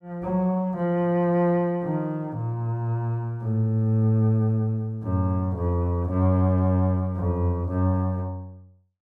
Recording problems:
none

